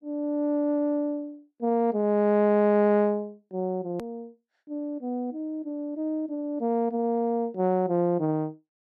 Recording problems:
edit click; at 4 s

